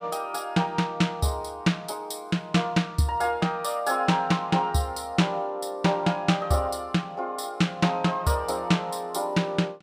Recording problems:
none

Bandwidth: 15 kHz